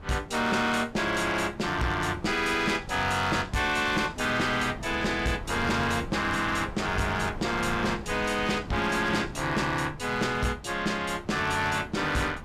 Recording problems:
distortion; hard clipping, signal-to-distortion ratio 11 dB
wind on the microphone; below 480 Hz, SNR 14 dB

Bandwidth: 14.5 kHz